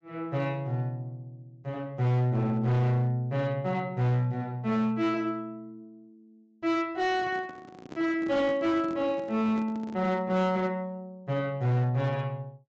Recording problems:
low-pass filter; nothing above 8 kHz
distortion; hard clipping, signal-to-distortion ratio 11 dB
microphone handling noise; from 7 to 10 s; peak -9 dB vs average level

